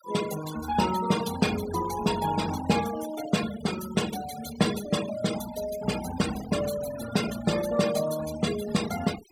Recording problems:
denoising artefacts; signal-to-artefact ratio 11 dB

